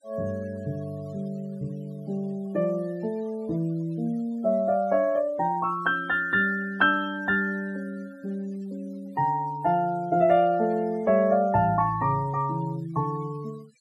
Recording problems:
denoising artefacts; signal-to-artefact ratio 26 dB

